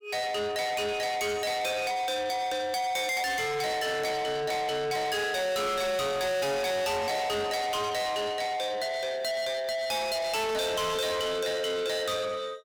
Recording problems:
distorted audio; soft clipping, signal-to-distortion ratio 6 dB

